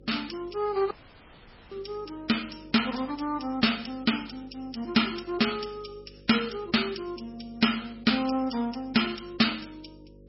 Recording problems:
codec artefacts; MP3, log-spectral distance 8 dB, nothing above 5.5 kHz
hum; 50 Hz, harmonics up to 550 Hz, SNR 24 dB
dropout; at 1 s for 1 s

